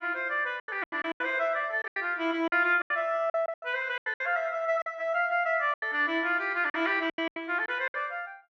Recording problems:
packet loss; 14% of the sound replaced, filled with silence

